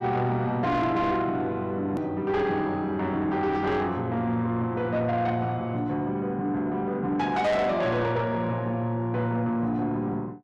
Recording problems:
distorted audio; soft clipping, signal-to-distortion ratio 11 dB
click at an edit; at 2 s

